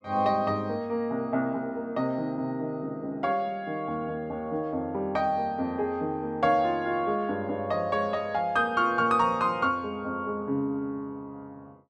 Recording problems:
none

